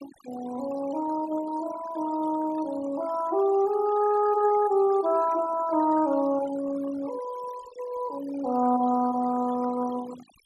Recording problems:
denoising artefacts; signal-to-artefact ratio 17 dB

